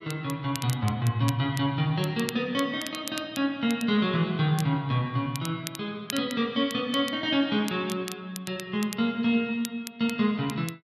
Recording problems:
crackle; vinyl, SNR 14 dB

